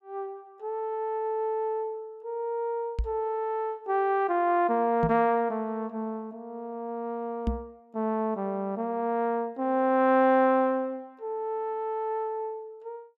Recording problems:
knock on the microphone; at 3 s, at 5 s and at 7.5 s; peak +3 dB vs average level

